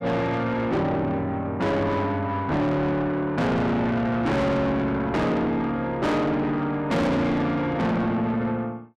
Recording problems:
distortion; soft clipping, signal-to-distortion ratio 6 dB

